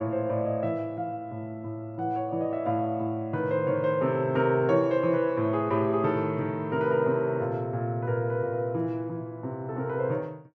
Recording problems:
none

